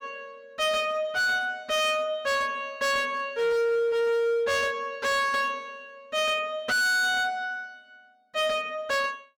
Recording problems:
distorted audio; hard clipping, signal-to-distortion ratio 7 dB

